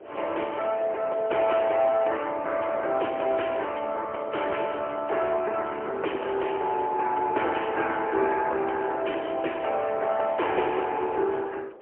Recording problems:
telephone audio; 300 Hz to 3.1 kHz, AMR-NB, then MP3
wind on the microphone; below 640 Hz, SNR 19 dB

